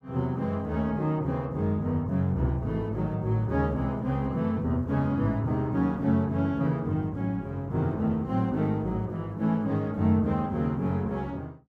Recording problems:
none

